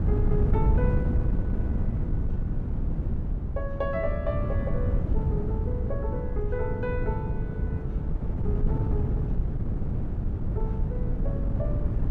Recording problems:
wind noise; below 140 Hz, SNR -7 dB

